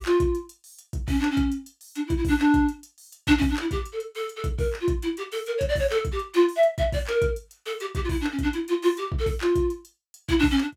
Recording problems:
none

